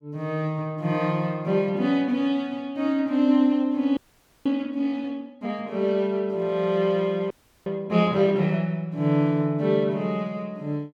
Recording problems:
frozen audio; at 4 s and at 7.5 s

